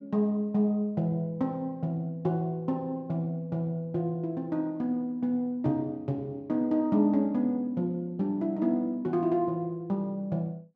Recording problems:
none

